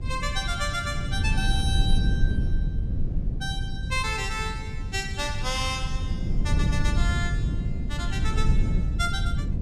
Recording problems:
low-frequency rumble; below 110 Hz, SNR -2 dB

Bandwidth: 14.5 kHz